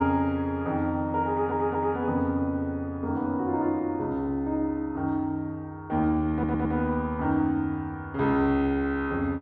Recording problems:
audio stuttering; at 1.5 s and at 6.5 s

